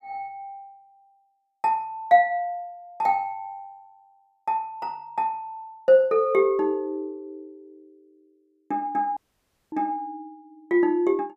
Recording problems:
dropout; at 9 s for 0.5 s

